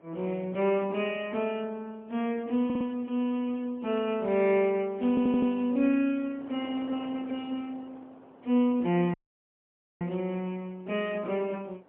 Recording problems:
phone line; 190 Hz to 3.5 kHz, AMR-NB, then MP3
wind on the microphone; below 860 Hz, SNR 24 dB
stutter; at 2.5 s and at 5 s
dropout; at 9 s for 1 s

